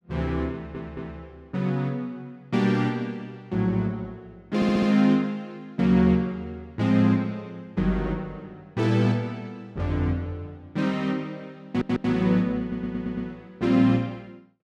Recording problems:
audio stuttering; 4 times, first at 0.5 s

